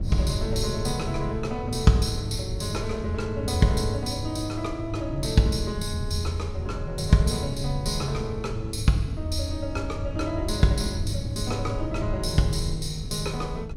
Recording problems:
hum; 50 Hz, harmonics up to 1.9 kHz, SNR 24 dB
low-frequency rumble; below 74 Hz, SNR 13 dB
wind noise; below 140 Hz, SNR 9 dB

